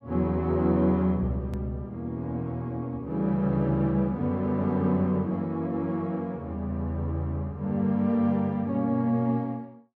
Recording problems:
hard cut with a click; at 1.5 s

